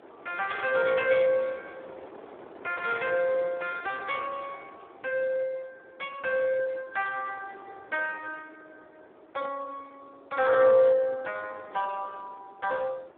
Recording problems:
phone line; 300 Hz to 3.6 kHz, Speex
wind noise; below 870 Hz, SNR 21 dB

